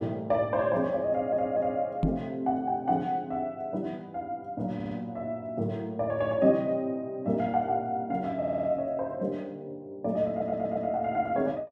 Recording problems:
stutter; 4 times, first at 1 s
microphone bump; at 2 s; peak +6 dB vs average level

